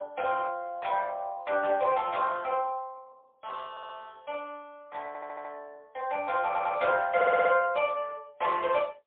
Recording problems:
telephone audio; 320 Hz to 3.5 kHz, AMR-NB, then MP3
stutter; 4 times, first at 3.5 s

